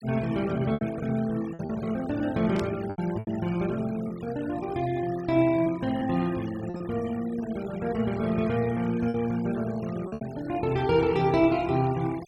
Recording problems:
denoising artefacts; signal-to-artefact ratio 19 dB
packet loss; 5% of the sound replaced, filled with repeated pitch periods
burst of static; at 2.5 s; peak -7 dB vs average level

